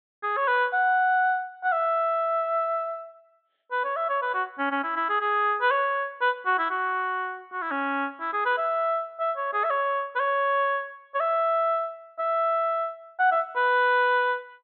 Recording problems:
low-pass filter; nothing above 4 kHz

